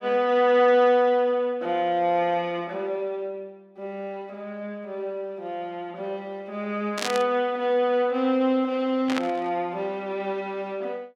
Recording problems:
static burst; at 7 s and at 9 s; peak +1 dB vs average level

